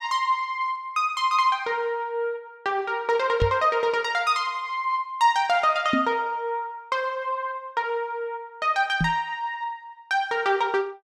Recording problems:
microphone bump; at 3.5 s, at 6 s and at 9 s; peak +3 dB vs average level

